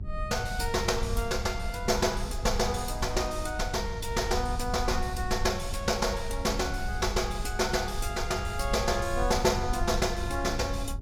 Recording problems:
hum; 50 Hz, harmonics up to 700 Hz, SNR 17 dB
wind noise; below 74 Hz, SNR 7 dB

